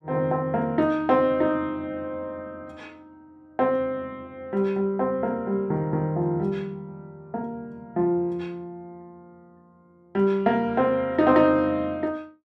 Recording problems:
none

